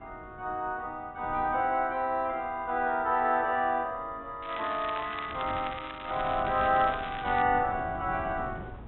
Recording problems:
treble cut off; nothing above 3.8 kHz
wind on the microphone; below 390 Hz, SNR 17 dB
crackling; from 4.5 to 7.5 s; loose cable, SNR 13 dB

